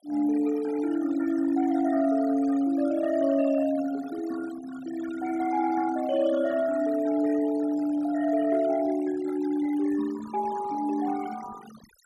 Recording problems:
denoising artefacts; signal-to-artefact ratio 18 dB

